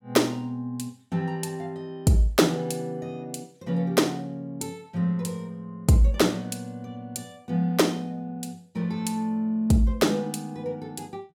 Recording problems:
none

